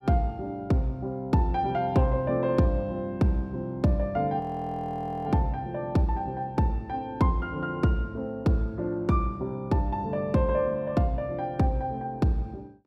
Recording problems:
audio freezing; at 4.5 s for 1 s

